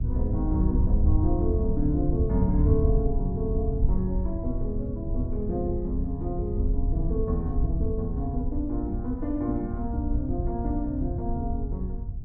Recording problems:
low-frequency rumble; below 84 Hz, SNR -1 dB

